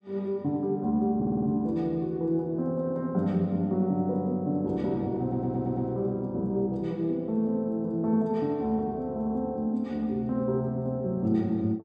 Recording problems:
audio stuttering; at 1 s and at 5 s

